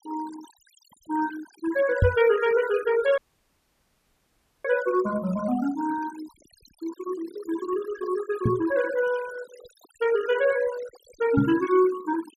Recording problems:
noise reduction artefacts; signal-to-artefact ratio 16 dB
microphone thump; at 2 s, at 8.5 s and at 11 s; peak +7 dB vs average level
dropout; at 3 s for 1.5 s

